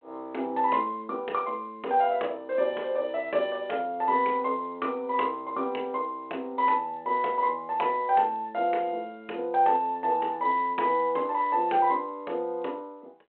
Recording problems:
telephone audio; 320 Hz to 3.3 kHz, G.726

